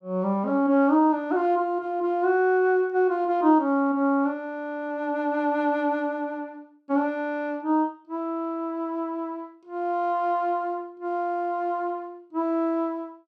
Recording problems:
none

